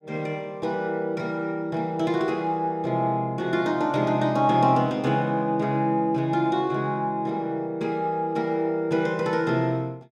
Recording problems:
none

